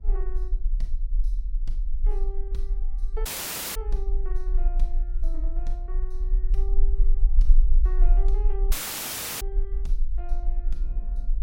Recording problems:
rumble; below 38 Hz, strongest tone 22 Hz, SNR -15 dB
wind on the microphone; below 280 Hz, SNR 18 dB
dropout; at 3.5 s for 0.5 s and at 8.5 s for 0.5 s

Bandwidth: 16.5 kHz